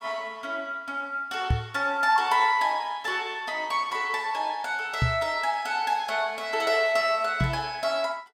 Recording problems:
knock on the microphone; at 1.5 s, at 5 s and at 7.5 s; peak +5 dB vs average level

